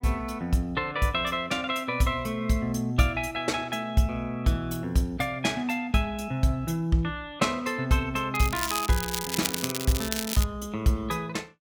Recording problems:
crackling; from 8.5 to 10 s; loose cable, SNR 4 dB

